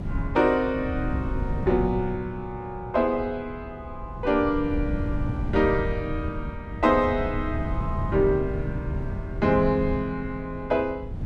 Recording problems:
wind on the microphone; below 140 Hz, SNR 7 dB

